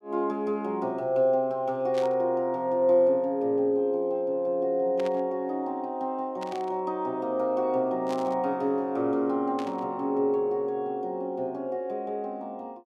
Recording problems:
burst of static; 5 times, first at 2 s; peak -9 dB vs average level

